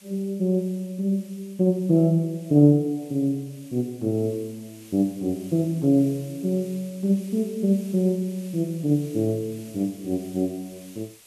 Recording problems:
background hiss; SNR 24 dB

